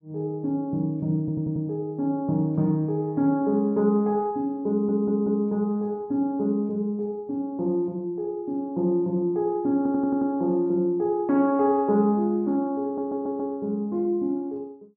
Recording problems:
stutter; 4 times, first at 1 s

